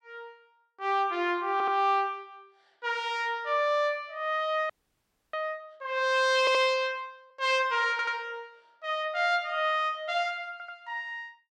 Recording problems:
audio stuttering; 4 times, first at 1.5 s
audio freezing; at 4.5 s for 0.5 s

